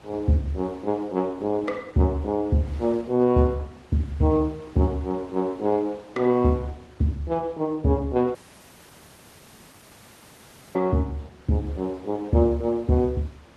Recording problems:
codec artefacts; Opus, log-spectral distance 3 dB
wind noise; below 1.9 kHz, SNR 25 dB
dropout; at 8.5 s for 2.5 s

